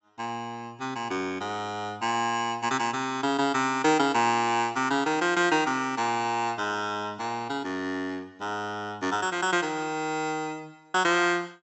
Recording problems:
treble cut off; nothing above 7.8 kHz

